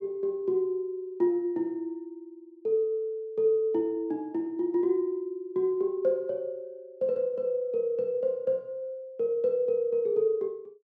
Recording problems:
none

